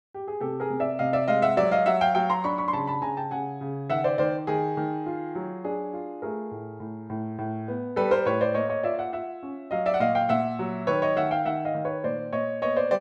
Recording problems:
none

